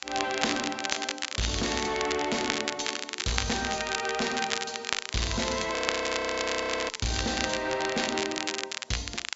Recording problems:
treble missing; nothing above 8 kHz
distortion; hard clipping, uneven, signal-to-distortion ratio 7 dB
background hiss; SNR 24 dB
crackling; vinyl, SNR 2 dB
frozen audio; at 6 s for 1 s

